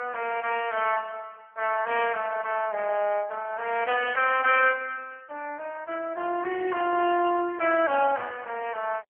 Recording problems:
phone line; 280 Hz to 2.8 kHz, AMR-NB

